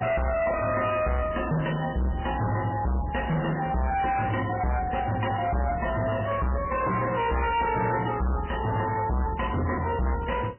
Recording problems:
lossy codec; MP3, log-spectral distance 5 dB, nothing above 3 kHz
distorted audio; hard clipping, uneven, signal-to-distortion ratio 6 dB

